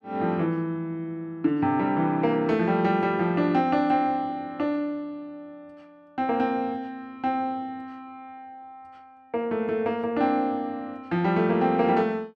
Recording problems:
none

